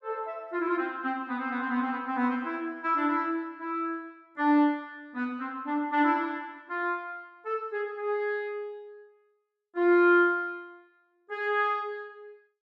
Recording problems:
none

